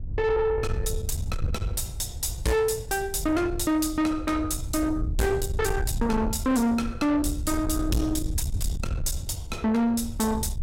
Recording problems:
distortion; soft clipping, signal-to-distortion ratio 8 dB
wind on the microphone; below 110 Hz, SNR 6 dB

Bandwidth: 16 kHz